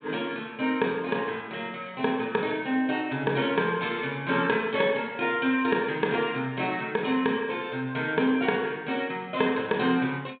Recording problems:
treble cut off; nothing above 4 kHz

